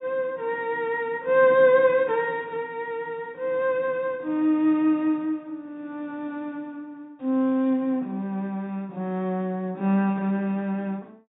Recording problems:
low-pass filter; nothing above 4 kHz

